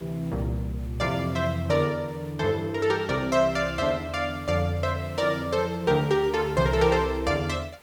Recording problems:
hiss; SNR 25 dB

